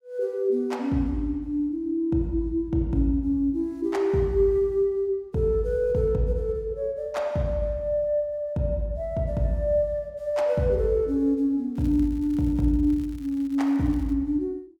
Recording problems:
crackle; from 12 to 14 s; loose cable, SNR 29 dB

